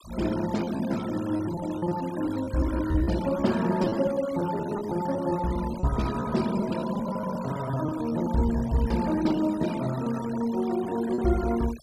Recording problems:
denoising artefacts; signal-to-artefact ratio 16 dB
packet loss; 12% of the sound replaced, filled with repeated pitch periods

